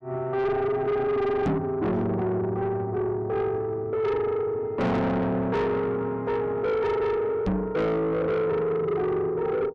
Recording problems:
distorted audio; soft clipping, signal-to-distortion ratio 7 dB
knock on the microphone; at 1.5 s and at 7.5 s; peak +4 dB vs average level

